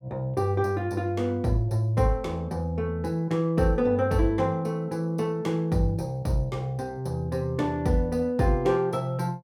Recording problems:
none

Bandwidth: 17 kHz